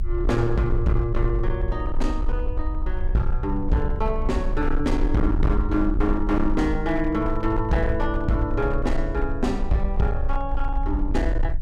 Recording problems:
distorted audio; hard clipping, signal-to-distortion ratio 11 dB
rumble; below 52 Hz, strongest tone 20 Hz, SNR 3 dB

